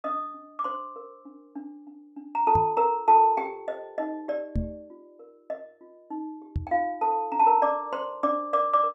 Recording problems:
microphone bump; at 2.5 s, at 4.5 s and at 6.5 s; peak -1 dB vs average level

